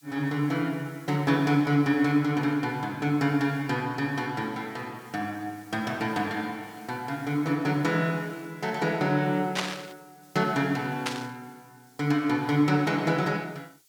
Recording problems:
hiss; slope +4 dB per octave, SNR 28 dB
static burst; at 9.5 s and at 11 s; peak +4 dB vs average level

